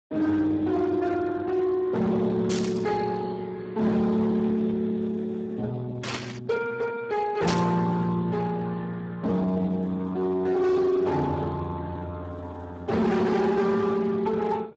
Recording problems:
lossy compression; Speex, log-spectral distance 3 dB, nothing above 7.6 kHz
distortion; hard clipping, signal-to-distortion ratio 10 dB
burst of static; at 2.5 s, at 6 s and at 7.5 s; peak -1 dB vs average level

